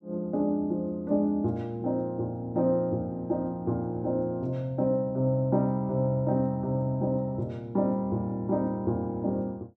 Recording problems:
none

